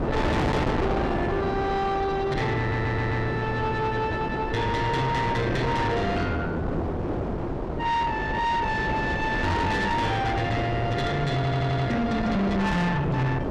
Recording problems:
distortion; soft clipping, signal-to-distortion ratio 7 dB
hum; 50 Hz, harmonics up to 400 Hz, SNR 19 dB
wind on the microphone; below 720 Hz, SNR 3 dB
stutter; at 2.5 s and at 11 s

